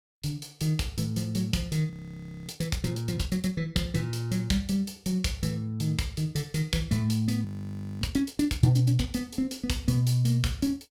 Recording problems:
frozen audio; at 2 s for 0.5 s and at 7.5 s for 0.5 s

